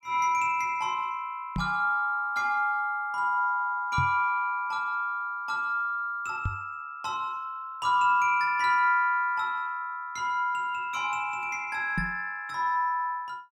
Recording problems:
microphone thump; 4 times, first at 1.5 s; peak 0 dB vs average level

